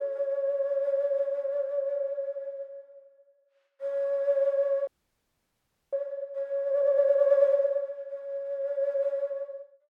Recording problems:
audio freezing; at 5 s for 1 s

